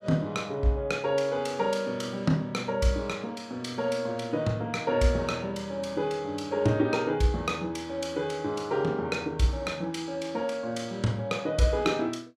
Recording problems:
none

